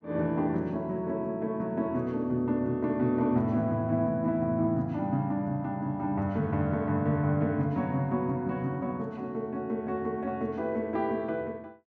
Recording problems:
none

